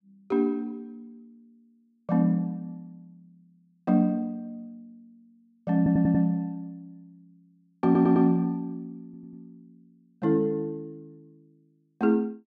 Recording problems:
stutter; at 6 s, at 8 s and at 9 s

